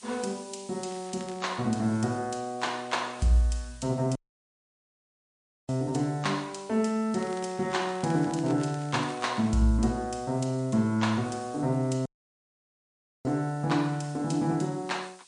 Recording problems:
lossy codec; MP3, log-spectral distance 6 dB, nothing above 10.1 kHz
background hiss; SNR 23 dB
crackling; at 1 s and from 7 to 9.5 s; loose cable, SNR 21 dB
dropout; at 4 s for 1.5 s and at 12 s for 1 s

